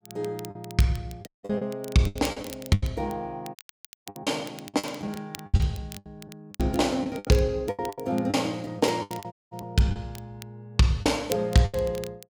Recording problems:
crackle; vinyl, SNR 18 dB
lost packets; 14% of the sound replaced, filled with the last packet
dropout; at 1.5 s, at 3.5 s for 0.5 s and at 9.5 s

